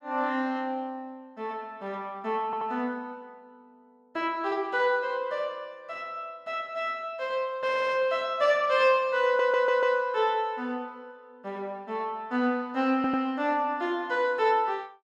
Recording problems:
stutter; 4 times, first at 2.5 s

